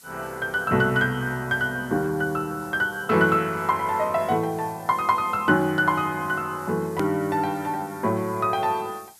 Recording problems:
hiss; SNR 23 dB
edit click; at 7 s

